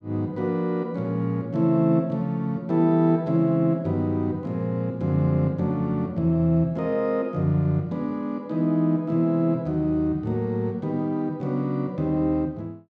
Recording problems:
none

